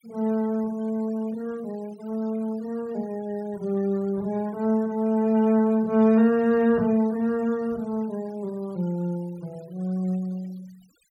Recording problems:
denoising artefacts; signal-to-artefact ratio 26 dB

